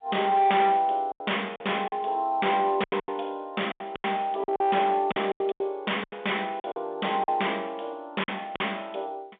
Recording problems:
telephone audio; 280 Hz to 3.6 kHz, G.711
distorted audio; hard clipping, uneven, signal-to-distortion ratio 9 dB
lost packets; 11% of the sound replaced, filled with silence

